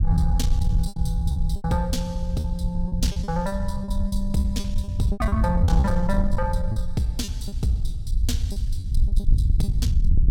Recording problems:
distorted audio; soft clipping, signal-to-distortion ratio 11 dB
rumble; below 76 Hz, SNR -2 dB
lost packets; 11% of the sound replaced, filled with repeated pitch periods

